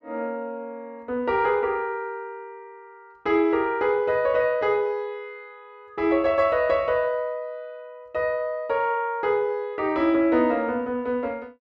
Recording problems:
none

